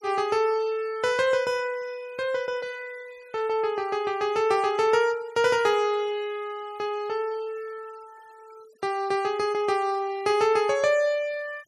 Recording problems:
noise reduction artefacts; signal-to-artefact ratio 25 dB

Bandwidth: 13.5 kHz